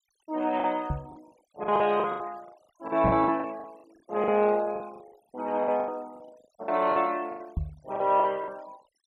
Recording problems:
noise reduction artefacts; signal-to-artefact ratio 25 dB
packet loss; 16% of the sound replaced, filled with the last packet
microphone bump; at 1 s, at 3 s and at 7.5 s; peak +1 dB vs average level

